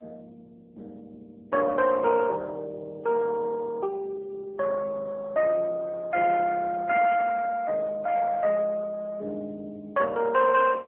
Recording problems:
telephone audio; 340 Hz to 2.8 kHz, AMR-NB

